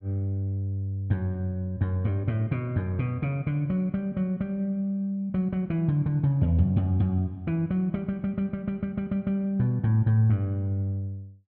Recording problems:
none

